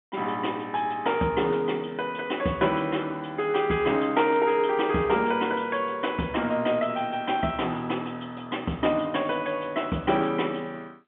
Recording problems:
phone line; 170 Hz to 3.5 kHz, G.711

